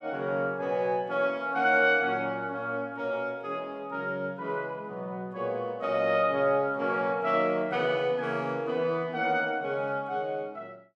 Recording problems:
none

